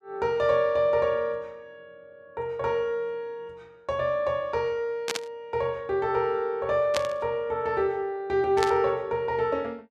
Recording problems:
static burst; at 5 s, at 7 s and at 8.5 s; peak +2 dB vs average level

